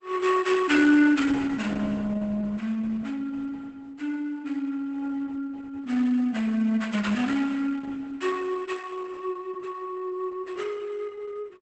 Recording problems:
lossy codec; Opus, log-spectral distance 3 dB, nothing above 8 kHz

